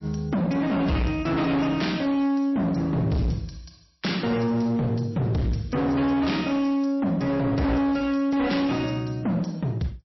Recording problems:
lossy compression; MP3, log-spectral distance 4 dB, nothing above 5.7 kHz
distortion; hard clipping, signal-to-distortion ratio 7 dB

